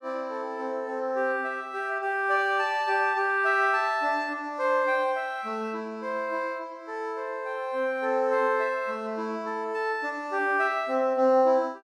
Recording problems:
none

